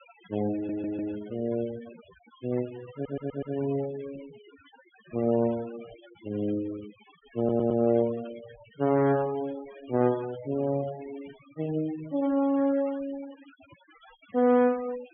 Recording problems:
treble missing; nothing above 3.4 kHz
denoising artefacts; signal-to-artefact ratio 20 dB
stutter; at 0.5 s, at 3 s and at 7.5 s

